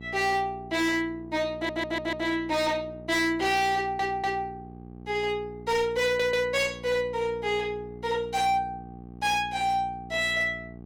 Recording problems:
distortion; hard clipping, signal-to-distortion ratio 10 dB
hum; 60 Hz, harmonics up to 840 Hz, SNR 17 dB
audio stuttering; at 1.5 s, at 4 s and at 6 s

